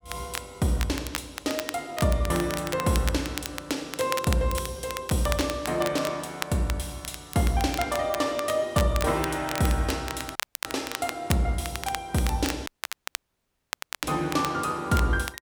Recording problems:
crackling; vinyl, SNR 9 dB
dropout; at 10 s and at 13 s for 1.5 s

